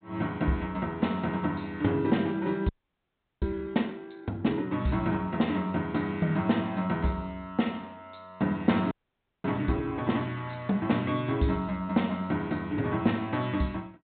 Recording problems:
treble missing; nothing above 4 kHz
frozen audio; at 2.5 s for 0.5 s and at 9 s for 0.5 s

